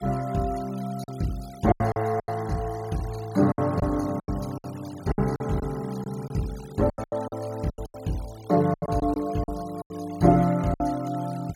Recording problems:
denoising artefacts; signal-to-artefact ratio 21 dB
packet loss; 11% of the sound replaced, filled with silence

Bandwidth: 16.5 kHz